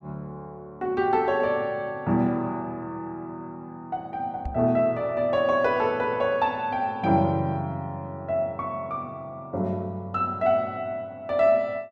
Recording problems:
microphone thump; at 4.5 s; peak -4 dB vs average level

